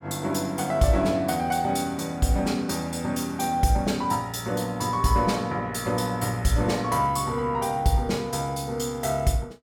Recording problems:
none

